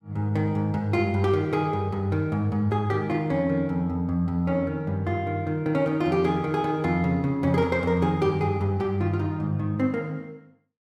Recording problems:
none

